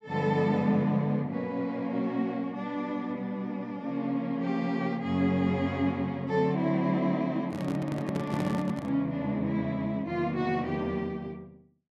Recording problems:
handling noise; from 7.5 to 9 s; peak -1 dB vs average level

